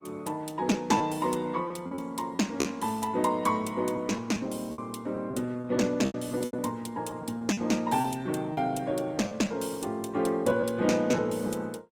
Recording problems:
lossy codec; Opus, log-spectral distance 3 dB, nothing above 19 kHz
lost packets; 8% of the sound replaced, filled with repeated pitch periods

